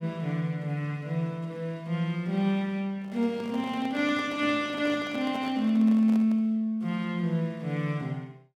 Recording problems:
handling noise; from 3 to 6.5 s; peak -9 dB vs average level

